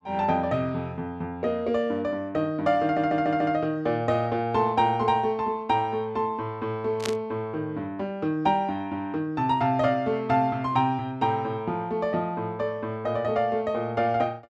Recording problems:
audio stuttering; at 3 s
static burst; at 7 s; peak -1 dB vs average level

